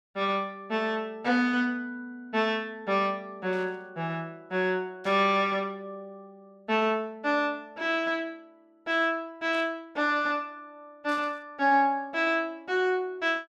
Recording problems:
static burst; 4 times, first at 3.5 s; peak -15 dB vs average level

